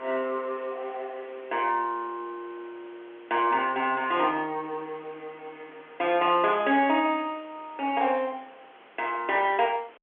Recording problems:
phone line; 280 Hz to 3.3 kHz, G.711
hiss; SNR 25 dB

